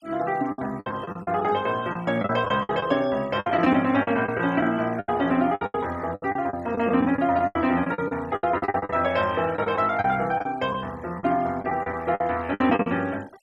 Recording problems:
noise reduction artefacts; signal-to-artefact ratio 22 dB
lost packets; 14% of the sound replaced, filled with the last packet

